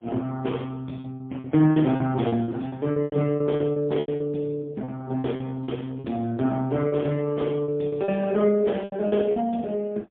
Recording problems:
telephone audio; 130 Hz to 3.4 kHz, AMR-NB, then MP3
packet loss; 12% of the sound replaced, filled with repeated pitch periods

